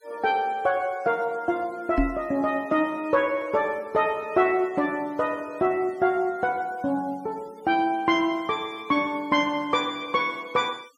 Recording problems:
denoising artefacts; signal-to-artefact ratio 27 dB
knock on the microphone; at 2 s; peak +5 dB vs average level

